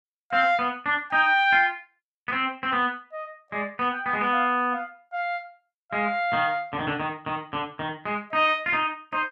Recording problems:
none

